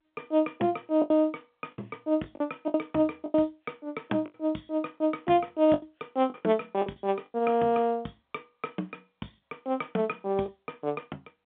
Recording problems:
telephone audio; 150 Hz to 3.6 kHz, G.711
lost packets; 8% of the sound replaced, filled with the last packet

